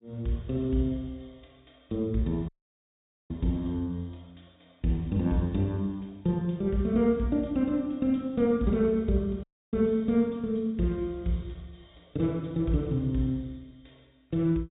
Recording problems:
low-pass filter; nothing above 4 kHz
dropout; at 2.5 s for 1 s and at 9.5 s

